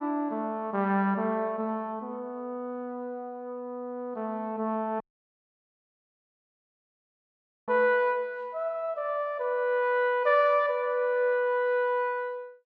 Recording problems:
dropout; at 5 s for 2.5 s

